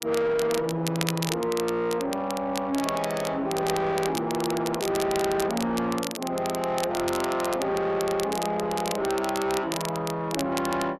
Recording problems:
distortion; soft clipping, signal-to-distortion ratio 11 dB
crackle; vinyl, SNR 9 dB

